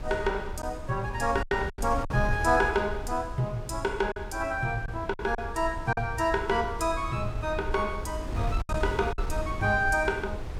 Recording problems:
wind noise; below 100 Hz, SNR 8 dB
lost packets; 5% of the sound replaced, filled with silence

